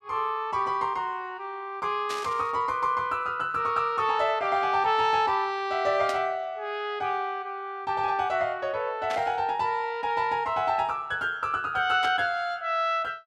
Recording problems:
burst of static; 4 times, first at 2 s; peak -5 dB vs average level

